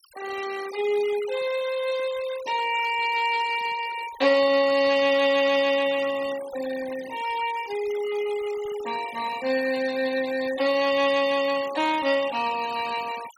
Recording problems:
noise reduction artefacts; signal-to-artefact ratio 15 dB

